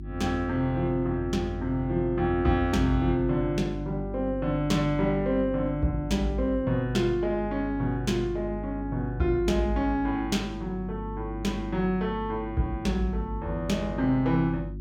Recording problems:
electrical hum; 50 Hz, harmonics up to 350 Hz, SNR 10 dB

